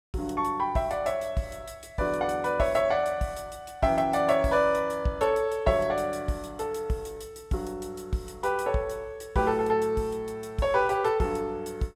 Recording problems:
none

